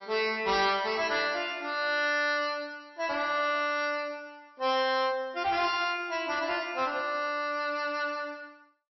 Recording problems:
lossy codec; MP3, log-spectral distance 3 dB, nothing above 5.7 kHz
distorted audio; hard clipping, uneven, signal-to-distortion ratio 11 dB

